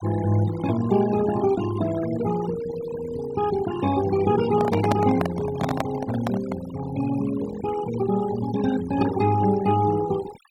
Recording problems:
denoising artefacts; signal-to-artefact ratio 14 dB
microphone handling noise; from 4.5 to 6.5 s; peak +4 dB vs average level

